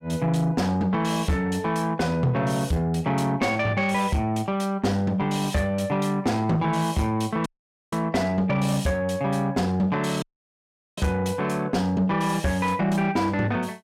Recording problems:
distortion; soft clipping, signal-to-distortion ratio 11 dB
dropout; at 7.5 s and at 10 s for 1 s

